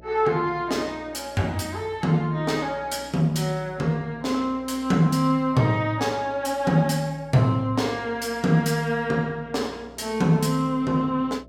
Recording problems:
hum; 60 Hz, harmonics up to 660 Hz, SNR 26 dB

